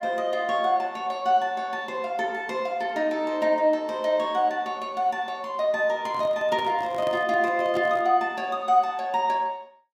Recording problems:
microphone handling noise; from 6 to 8 s; peak -8 dB vs average level

